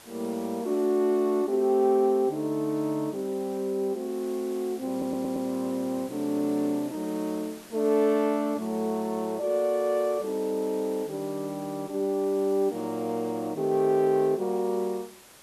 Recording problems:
hiss; slope -2 dB per octave, SNR 21 dB
audio stuttering; at 5 s

